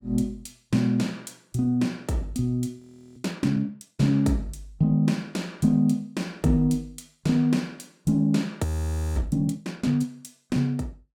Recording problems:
frozen audio; at 3 s and at 8.5 s for 0.5 s

